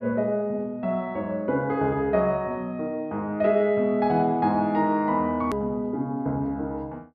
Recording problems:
low-pass filter; nothing above 5.5 kHz
hard cut with a click; at 5.5 s

